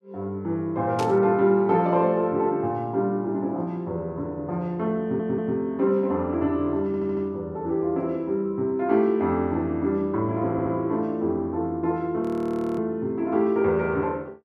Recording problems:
burst of static; at 1 s; peak -7 dB vs average level
stutter; at 5 s, at 7 s and at 11 s
audio freezing; at 12 s for 0.5 s

